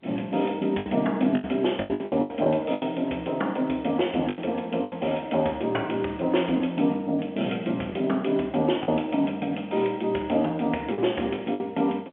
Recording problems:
phone line; 300 Hz to 3.3 kHz, G.711
packet loss; 7% of the sound replaced, filled with the last packet

